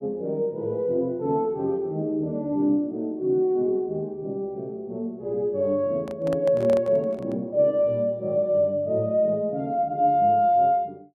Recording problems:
microphone handling noise; from 6 to 7.5 s; peak -8 dB vs average level

